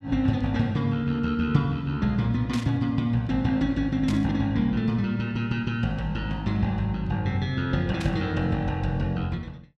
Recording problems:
burst of static; at 2.5 s, at 4 s and at 8 s; peak -6 dB vs average level

